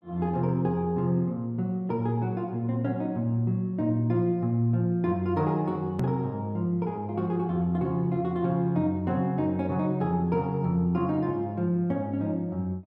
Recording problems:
edit click; at 6 s

